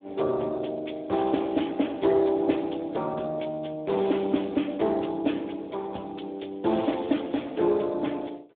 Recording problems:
telephone audio; 170 Hz to 3.6 kHz, Speex

